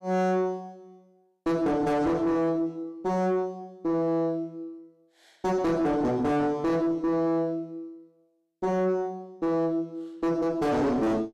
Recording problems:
distorted audio; soft clipping, signal-to-distortion ratio 5 dB

